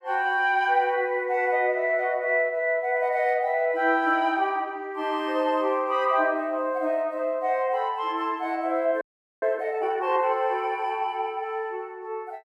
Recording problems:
audio freezing; at 9 s

